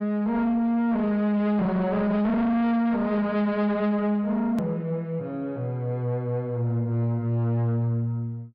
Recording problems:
treble missing; nothing above 5.5 kHz
distortion; soft clipping, signal-to-distortion ratio 7 dB
click at an edit; at 4.5 s

